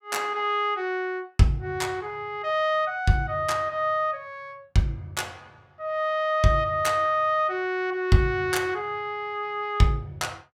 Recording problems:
none

